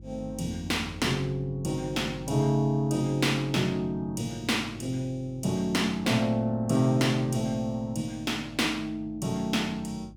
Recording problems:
hum; 50 Hz, harmonics up to 350 Hz, SNR 20 dB

